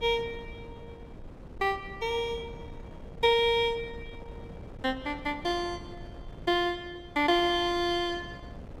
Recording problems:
wind noise; below 290 Hz, SNR 17 dB

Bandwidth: 16.5 kHz